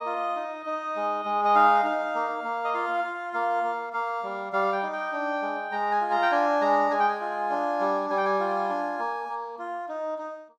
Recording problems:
none

